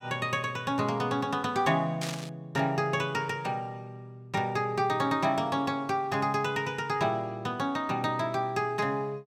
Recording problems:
static burst; at 2 s; peak -2 dB vs average level

